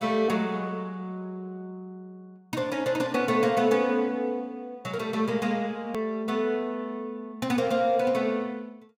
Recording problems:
click at an edit; at 6 s

